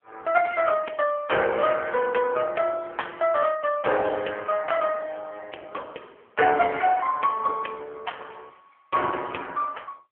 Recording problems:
phone line; 340 Hz to 3.3 kHz, AMR-NB

